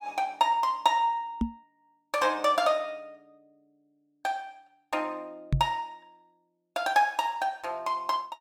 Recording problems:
microphone bump; at 1.5 s and at 5.5 s; peak +6 dB vs average level

